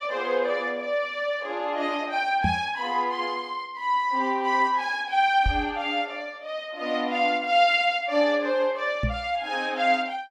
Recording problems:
microphone thump; at 2.5 s, at 5.5 s and at 9 s; peak +2 dB vs average level

